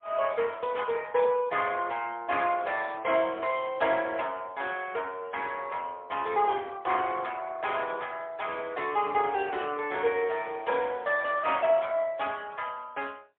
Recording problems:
phone line; 340 Hz to 3.4 kHz, AMR-NB, then MP3

